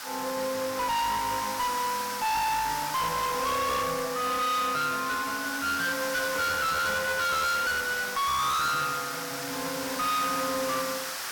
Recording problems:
distortion; hard clipping, uneven, signal-to-distortion ratio 6 dB
background hiss; SNR 6 dB

